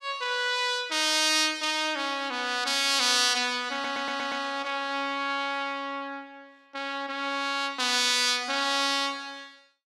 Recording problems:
audio stuttering; at 3.5 s

